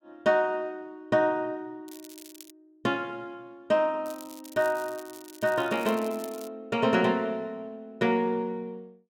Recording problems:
crackle; at 2 s and from 4 to 6.5 s; loose cable, SNR 19 dB

